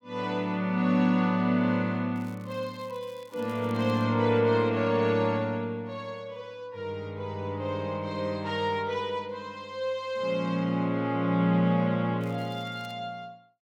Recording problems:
crackle; from 2 to 4 s and at 12 s; loose cable, SNR 28 dB

